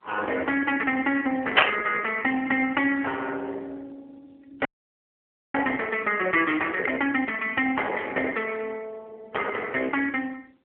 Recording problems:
phone line; 340 Hz to 3.3 kHz, AMR-NB
distortion; soft clipping, signal-to-distortion ratio 20 dB
static burst; at 1.5 s; peak +14 dB vs average level
frozen audio; at 4.5 s for 1 s

